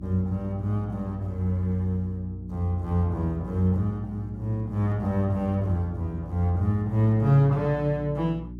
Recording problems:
hum; 60 Hz, harmonics up to 360 Hz, SNR 13 dB

